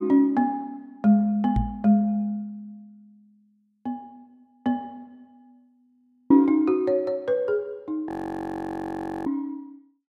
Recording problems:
knock on the microphone; at 1.5 s and at 9.5 s; peak +3 dB vs average level
frozen audio; at 6 s and at 8 s for 1 s

